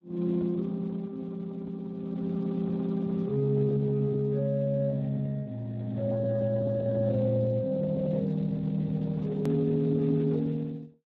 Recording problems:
lossy compression; Speex, log-spectral distance 2 dB, nothing above 13.1 kHz
edit click; at 9.5 s

